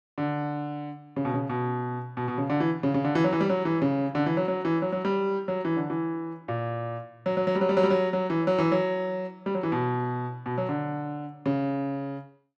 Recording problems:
none

